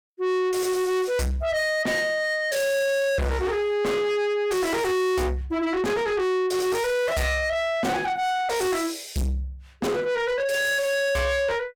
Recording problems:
distortion; soft clipping, signal-to-distortion ratio 7 dB

